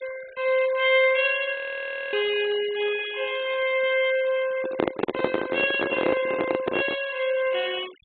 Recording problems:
treble missing; nothing above 4 kHz
denoising artefacts; signal-to-artefact ratio 19 dB
audio freezing; at 1.5 s for 0.5 s
handling noise; from 4.5 to 7 s; peak +4 dB vs average level

